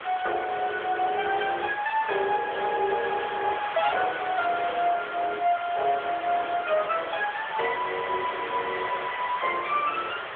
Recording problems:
telephone audio; 340 Hz to 3.5 kHz, AMR-NB
distorted audio; hard clipping, uneven, signal-to-distortion ratio 12 dB
hiss; SNR 8 dB
burst of static; at 2.5 s, at 5 s and at 9 s; peak -11 dB vs average level

